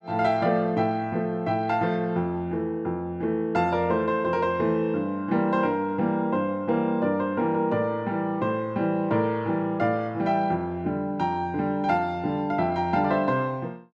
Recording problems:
none

